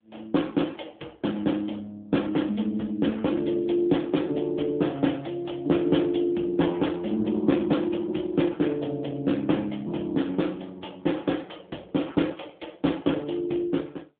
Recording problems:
telephone audio; 150 Hz to 3.6 kHz, AMR-NB

